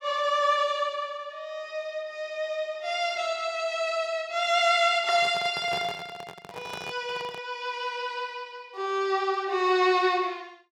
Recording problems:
handling noise; from 5 to 7.5 s; peak -6 dB vs average level

